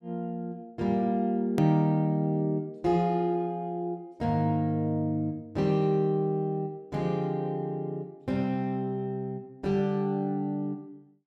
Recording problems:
hard cut with a click; at 1.5 s

